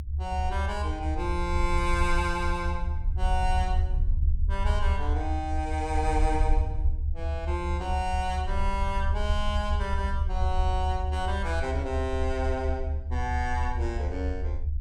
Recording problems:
low-frequency rumble; below 74 Hz, SNR -2 dB

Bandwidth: 17 kHz